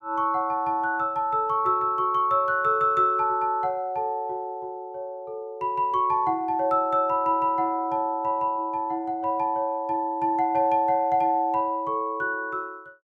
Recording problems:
none

